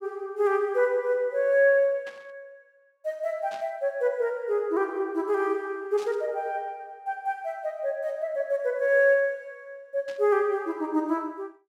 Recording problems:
static burst; 4 times, first at 2 s; peak -14 dB vs average level

